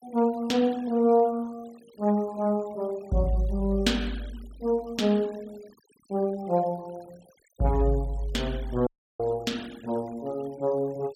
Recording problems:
noise reduction artefacts; signal-to-artefact ratio 25 dB
dropout; at 9 s

